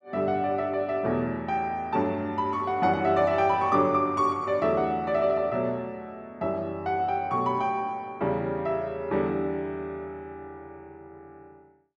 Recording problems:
none

